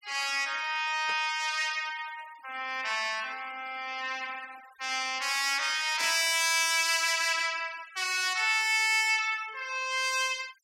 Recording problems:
noise reduction artefacts; signal-to-artefact ratio 22 dB
static burst; at 1 s and at 6 s; peak -9 dB vs average level

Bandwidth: 16.5 kHz